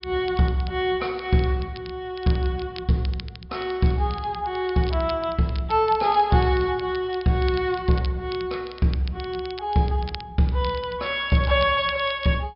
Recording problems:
treble missing; nothing above 5.5 kHz
crackle; vinyl, SNR 19 dB

